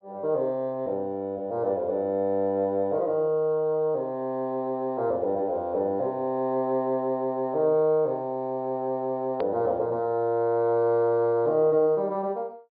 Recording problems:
treble cut off; nothing above 4.8 kHz
hard cut with a click; at 9.5 s

